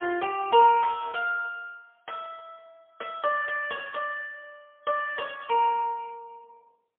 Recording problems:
phone line; 300 Hz to 3.3 kHz, AMR-NB, then MP3

